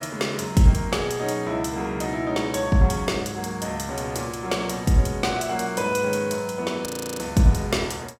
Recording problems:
audio freezing; at 7 s

